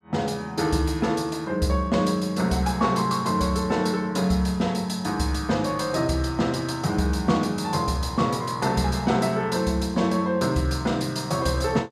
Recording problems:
none

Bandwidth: 15 kHz